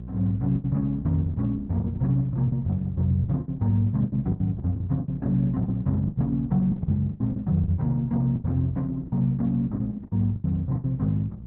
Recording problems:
lossy compression; Opus, log-spectral distance 2 dB, nothing above 4 kHz
electrical hum; 60 Hz, harmonics up to 420 Hz, SNR 15 dB
lost packets; 12% of the sound replaced, filled with the last packet

